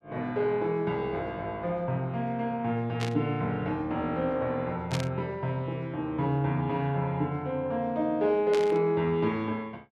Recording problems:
burst of static; at 3 s, at 5 s and at 8.5 s; peak -1 dB vs average level

